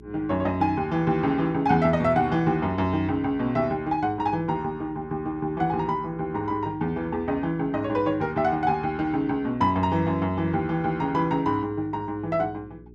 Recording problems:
hum; 60 Hz, harmonics up to 420 Hz, SNR 23 dB

